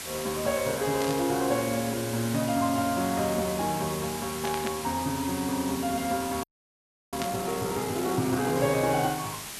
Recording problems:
hiss; slope 0 dB per octave, SNR 8 dB
static burst; at 1 s, at 4.5 s and at 7 s; peak -3 dB vs average level
audio freezing; at 6.5 s for 0.5 s

